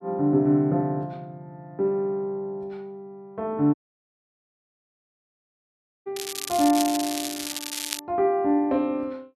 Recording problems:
audio cutting out; at 3.5 s for 2.5 s
crackle; from 6 to 8 s; loose cable, SNR 6 dB

